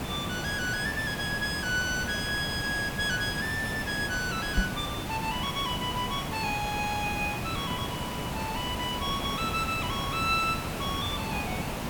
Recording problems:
hiss; slope -5 dB per octave, SNR 3 dB
knock on the microphone; at 4.5 s; peak +7 dB vs average level

